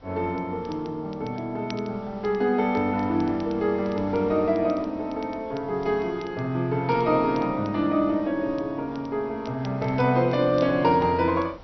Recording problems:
low-pass filter; nothing above 5.8 kHz
wind noise; below 970 Hz, SNR 23 dB
crackle; vinyl, SNR 27 dB

